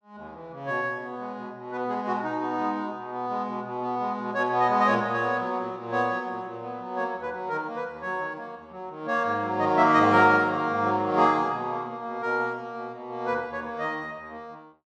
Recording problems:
none

